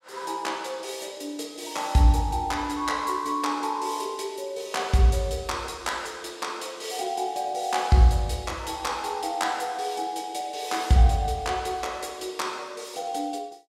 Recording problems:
none

